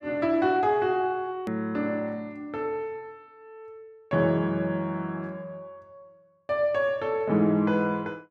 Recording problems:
click at an edit; at 1.5 s

